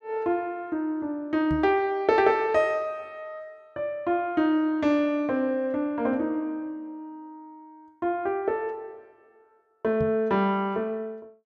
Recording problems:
microphone bump; at 1.5 s and at 10 s; peak -2 dB vs average level

